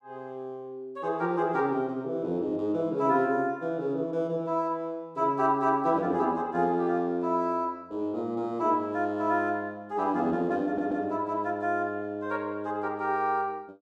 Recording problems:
audio stuttering; at 11 s

